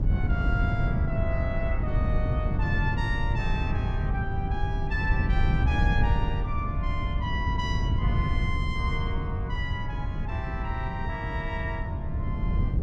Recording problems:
wind noise; below 130 Hz, SNR -5 dB

